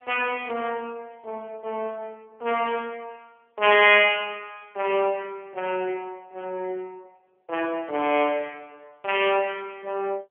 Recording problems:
telephone audio; 260 Hz to 3.3 kHz, AMR-NB

